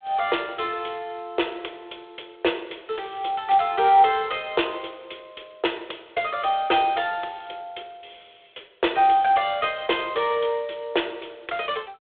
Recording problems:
phone line; 300 Hz to 3.6 kHz, G.726

